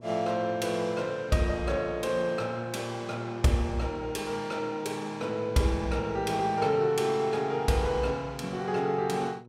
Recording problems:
hum; 60 Hz, harmonics up to 1.1 kHz, SNR 23 dB

